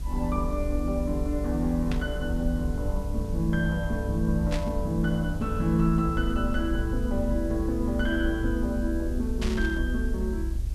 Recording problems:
background hiss; slope 0 dB per octave, SNR 23 dB
rumble; below 62 Hz, SNR 4 dB
burst of static; at 2 s, at 4.5 s and at 9.5 s; peak -3 dB vs average level

